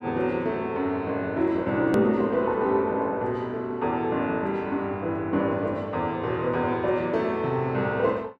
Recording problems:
click at an edit; at 2 s

